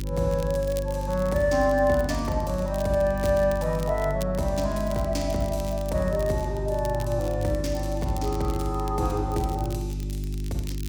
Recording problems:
electrical hum; 50 Hz, harmonics up to 400 Hz, SNR 6 dB
crackle; vinyl, SNR 19 dB

